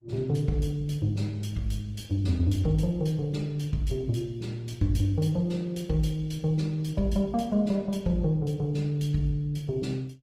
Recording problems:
lossy codec; Opus, log-spectral distance 2 dB, nothing above 17 kHz

